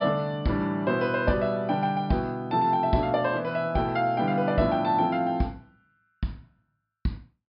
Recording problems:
treble missing; nothing above 5.5 kHz

